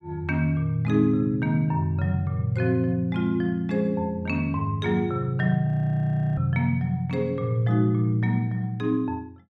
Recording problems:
audio freezing; at 5.5 s for 0.5 s

